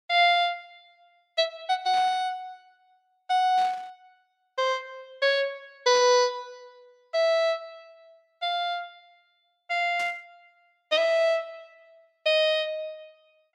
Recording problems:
burst of static; 4 times, first at 2 s; peak -12 dB vs average level

